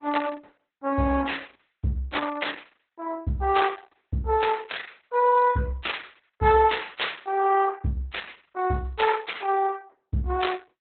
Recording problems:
lossy codec; Opus, log-spectral distance 5 dB, nothing above 4 kHz

